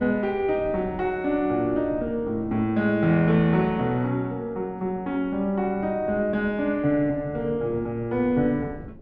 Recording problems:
wind on the microphone; below 300 Hz, SNR 19 dB

